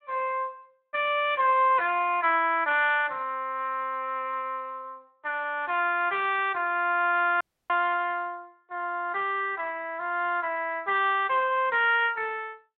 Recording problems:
phone line; 280 Hz to 3.6 kHz, Speex
audio cutting out; at 7.5 s

